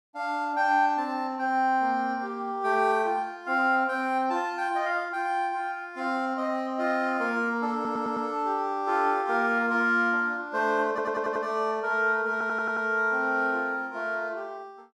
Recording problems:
stutter; at 8 s, at 11 s and at 12 s

